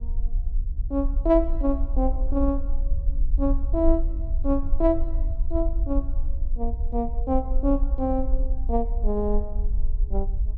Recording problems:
low-frequency rumble; below 48 Hz, SNR 1 dB

